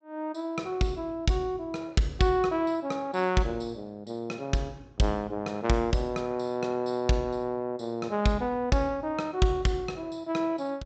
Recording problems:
treble cut off; nothing above 8 kHz

